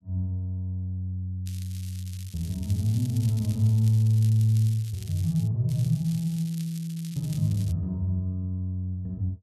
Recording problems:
crackle; from 1.5 to 5.5 s and from 5.5 to 7.5 s; loose cable, SNR 19 dB

